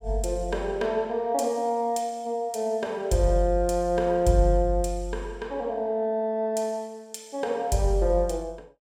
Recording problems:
none

